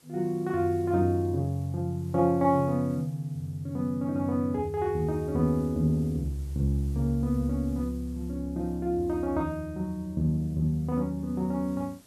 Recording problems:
background hiss; SNR 28 dB

